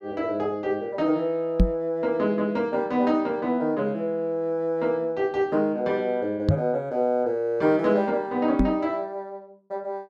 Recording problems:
microphone thump; at 1.5 s, at 6.5 s and at 8.5 s; peak +9 dB vs average level

